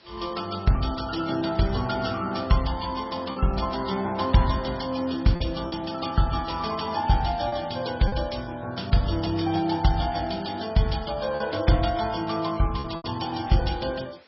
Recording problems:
codec artefacts; MP3, log-spectral distance 8 dB, nothing above 5.5 kHz
background hiss; SNR 27 dB
lost packets; 3% of the sound replaced, filled with repeated pitch periods

